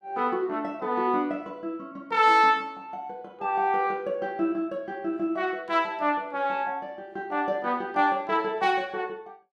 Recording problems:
none

